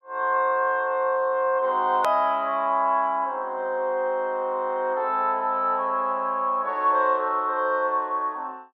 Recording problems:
click at an edit; at 2 s

